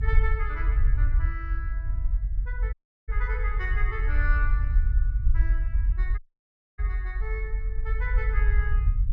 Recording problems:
rumble; below 54 Hz, SNR -9 dB
dropout; at 2.5 s and at 6 s for 0.5 s

